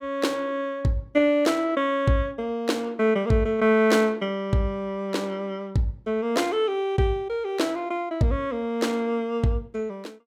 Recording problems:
none

